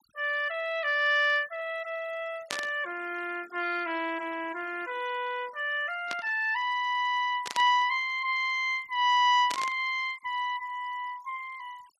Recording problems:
noise reduction artefacts; signal-to-artefact ratio 22 dB
burst of static; 4 times, first at 2.5 s; peak -1 dB vs average level

